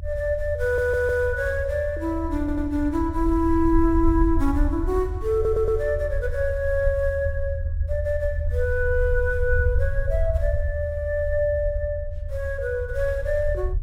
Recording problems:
rumble; below 78 Hz, SNR 4 dB
audio stuttering; at 0.5 s, at 2.5 s and at 5.5 s

